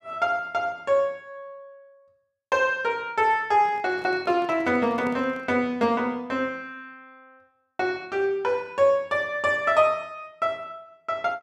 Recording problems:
microphone handling noise; from 3.5 to 5.5 s; peak -10 dB vs average level

